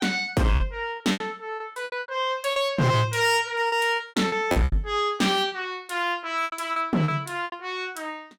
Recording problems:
distorted audio; hard clipping, signal-to-distortion ratio 10 dB
lost packets; 12% of the sound replaced, filled with repeated pitch periods

